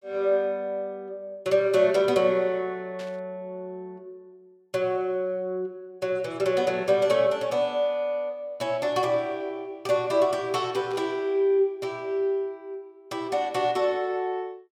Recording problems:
burst of static; at 3 s and at 11 s; peak -14 dB vs average level

